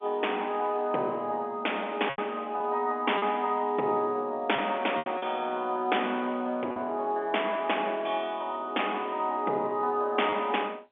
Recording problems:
telephone audio; 300 Hz to 3.6 kHz, G.711
packet loss; 3% of the sound replaced, filled with repeated pitch periods

